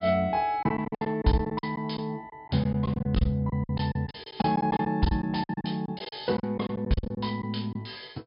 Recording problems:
treble missing; nothing above 5.1 kHz
lost packets; 14% of the sound replaced, filled with silence

